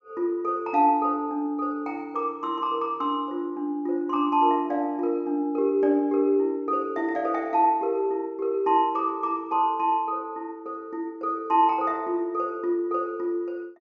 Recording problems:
treble cut off; nothing above 8 kHz

